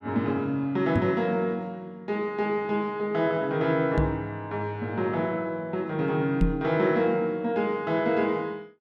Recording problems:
microphone bump; at 1 s, at 4 s and at 6.5 s; peak +6 dB vs average level

